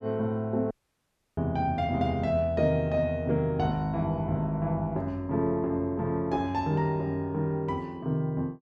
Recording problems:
dropout; at 0.5 s for 0.5 s

